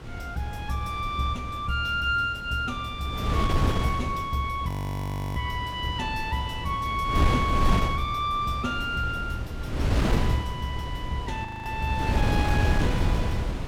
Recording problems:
wind noise; below 270 Hz, SNR 1 dB
frozen audio; at 4.5 s for 0.5 s and at 11 s

